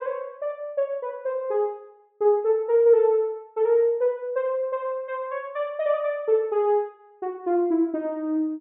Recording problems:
treble missing; nothing above 4 kHz

